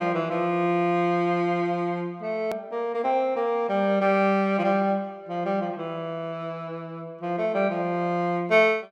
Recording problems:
hard cut with a click; at 2.5 s

